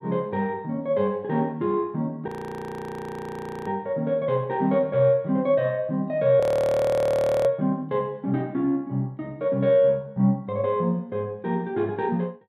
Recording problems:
audio freezing; at 2.5 s for 1.5 s and at 6.5 s for 1 s

